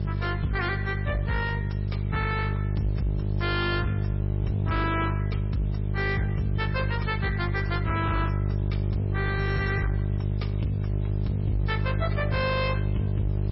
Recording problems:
lossy compression; MP3, log-spectral distance 3 dB, nothing above 5.5 kHz
distorted audio; soft clipping, signal-to-distortion ratio 11 dB
mains hum; 50 Hz, harmonics up to 600 Hz, SNR -2 dB
hiss; SNR 25 dB

